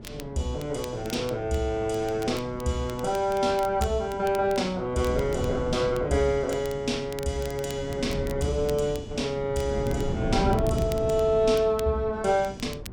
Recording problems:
wind on the microphone; below 280 Hz, SNR 9 dB
crackling; vinyl, SNR 20 dB

